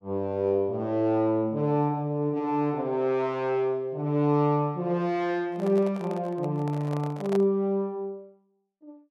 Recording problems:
handling noise; from 5.5 to 7.5 s; peak -5 dB vs average level

